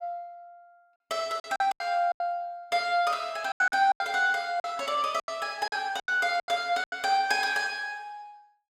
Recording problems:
lost packets; 11% of the sound replaced, filled with silence

